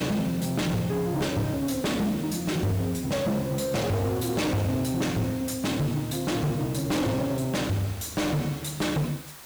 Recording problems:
distorted audio; soft clipping, signal-to-distortion ratio 6 dB
hiss; slope -1 dB per octave, SNR 16 dB

